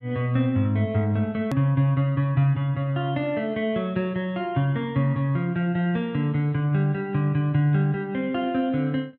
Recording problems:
click at an edit; at 1.5 s

